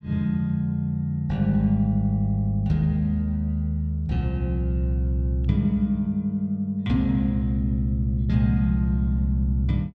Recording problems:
none

